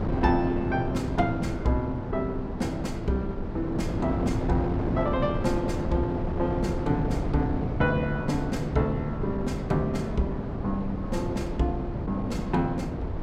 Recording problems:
wind noise; below 360 Hz, SNR 3 dB

